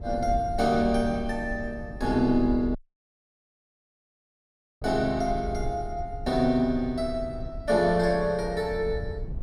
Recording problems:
low-frequency rumble; below 82 Hz, SNR 12 dB
audio cutting out; at 3 s for 2 s

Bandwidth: 15.5 kHz